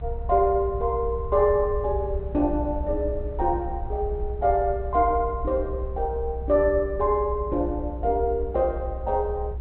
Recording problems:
treble cut off; nothing above 4 kHz
low-frequency rumble; below 64 Hz, strongest tone 62 Hz, SNR 8 dB

